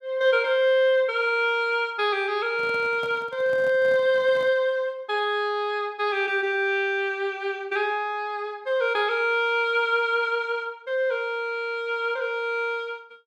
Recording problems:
microphone handling noise; from 2.5 to 4.5 s; peak -12 dB vs average level

